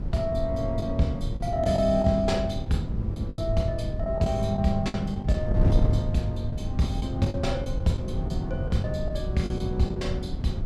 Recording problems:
wind noise; below 140 Hz, SNR 3 dB
packet loss; 8% of the sound replaced, filled with the last packet

